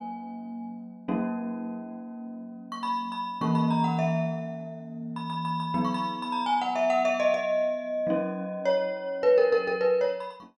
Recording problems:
none

